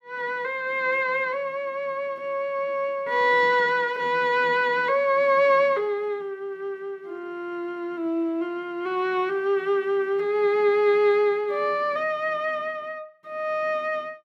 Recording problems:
none

